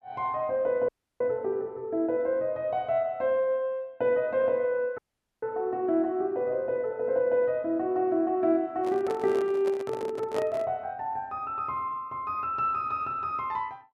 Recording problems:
dropout; at 1 s and at 5 s
handling noise; from 9 to 11 s; peak -3 dB vs average level

